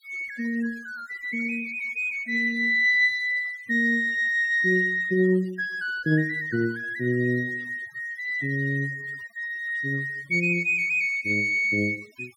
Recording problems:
noise reduction artefacts; signal-to-artefact ratio 27 dB

